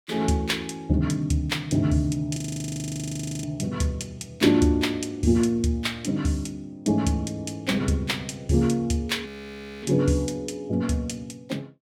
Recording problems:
audio freezing; at 2.5 s for 1 s and at 9.5 s for 0.5 s

